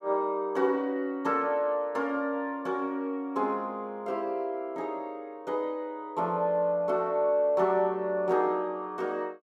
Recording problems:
none

